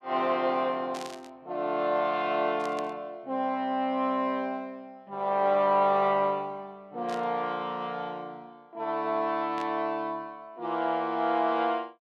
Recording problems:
static burst; 4 times, first at 1 s; peak -9 dB vs average level

